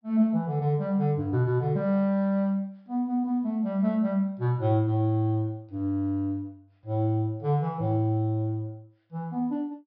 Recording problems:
treble cut off; nothing above 5.5 kHz

